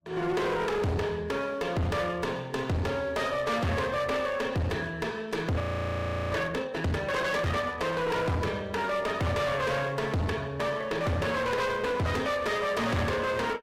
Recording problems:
codec artefacts; Vorbis, log-spectral distance 2 dB, nothing above 14.7 kHz
distorted audio; hard clipping, uneven, signal-to-distortion ratio 6 dB
frozen audio; at 5.5 s for 0.5 s

